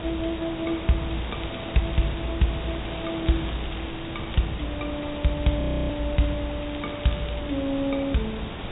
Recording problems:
treble missing; nothing above 4 kHz
background hiss; SNR 7 dB
wind noise; below 150 Hz, SNR 17 dB
crackle; from 1 to 2.5 s, from 2.5 to 4.5 s and at 6.5 s; loose cable, SNR 17 dB
frozen audio; at 5.5 s

